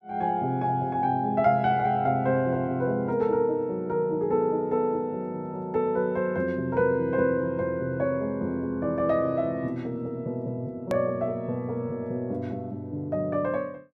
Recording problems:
click at an edit; at 11 s

